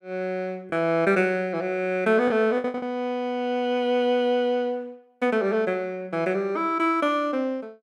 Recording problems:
packet loss; 3% of the sound replaced, filled with the last packet

